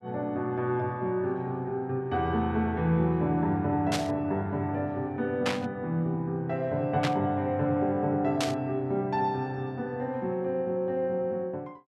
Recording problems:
burst of static; 4 times, first at 4 s; peak +3 dB vs average level

